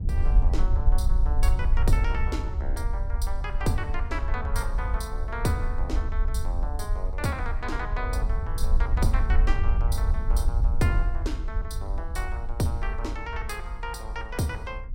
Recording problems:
wind noise; below 58 Hz, SNR -5 dB

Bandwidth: 16 kHz